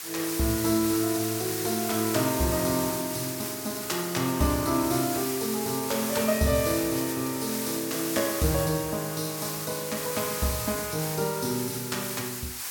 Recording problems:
hiss; slope +2 dB per octave, SNR 4 dB

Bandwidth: 17 kHz